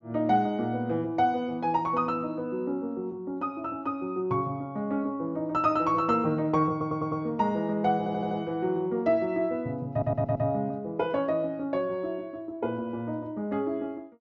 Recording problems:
treble cut off; nothing above 7.4 kHz
audio stuttering; at 6.5 s, at 8 s and at 10 s

